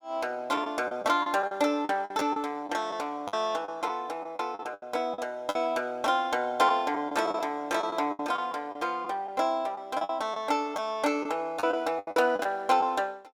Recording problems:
lost packets; 10% of the sound replaced, filled with the last packet

